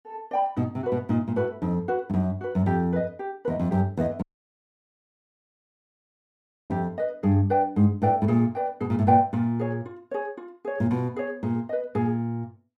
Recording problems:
dropout; at 4 s for 2.5 s

